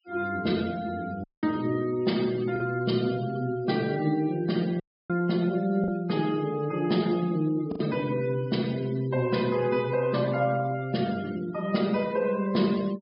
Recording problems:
treble cut off; nothing above 5.5 kHz
noise reduction artefacts; signal-to-artefact ratio 19 dB
lost packets; 1.2% of the sound replaced, filled with the last packet
audio cutting out; at 1 s and at 5 s

